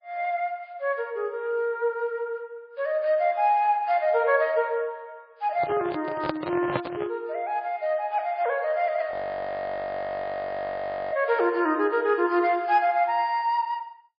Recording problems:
lossy compression; MP3, log-spectral distance 2 dB, nothing above 4.6 kHz
handling noise; from 5.5 to 7 s; peak +3 dB vs average level
audio freezing; at 9 s for 2 s

